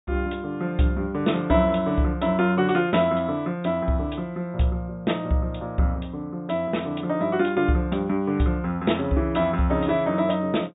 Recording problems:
treble missing; nothing above 4 kHz

